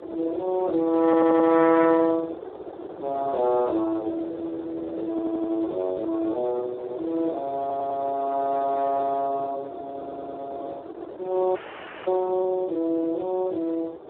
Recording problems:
telephone audio; 280 Hz to 2.3 kHz, Speex
wind noise; below 640 Hz, SNR 14 dB
stutter; 4 times, first at 1 s
frozen audio; at 12 s for 0.5 s

